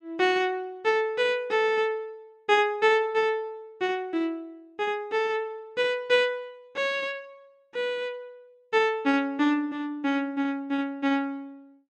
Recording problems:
none

